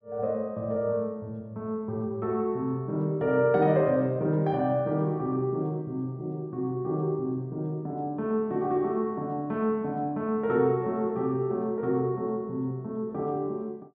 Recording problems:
none

